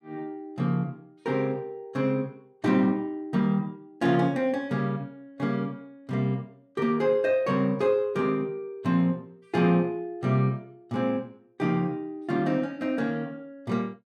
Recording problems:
none

